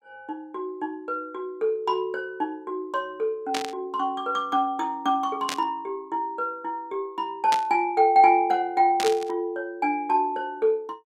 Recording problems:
burst of static; 4 times, first at 3.5 s; peak +1 dB vs average level

